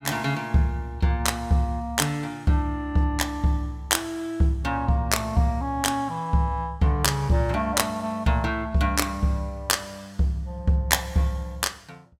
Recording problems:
none

